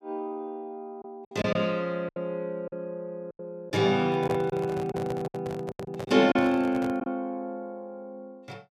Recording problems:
lost packets; 7% of the sound replaced, filled with silence
microphone handling noise; from 4 to 7 s; peak -2 dB vs average level

